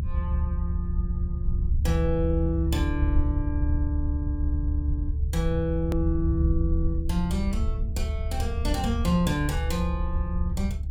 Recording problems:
rumble; below 74 Hz, SNR -2 dB
click at an edit; at 6 s

